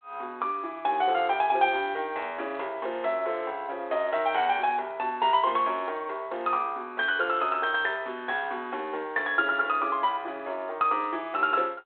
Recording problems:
phone line; 320 Hz to 3.6 kHz, G.726

